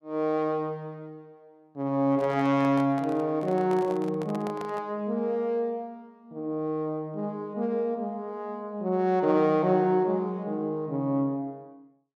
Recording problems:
microphone handling noise; from 2 to 5 s; peak -8 dB vs average level

